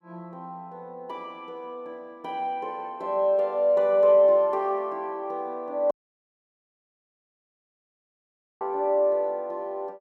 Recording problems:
audio cutting out; at 6 s for 2.5 s

